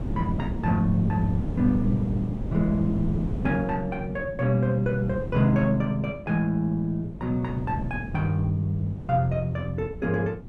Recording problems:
wind on the microphone; below 230 Hz, SNR 8 dB

